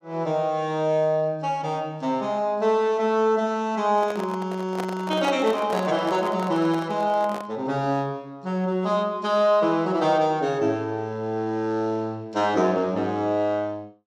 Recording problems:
handling noise; from 4 to 7.5 s; peak -3 dB vs average level

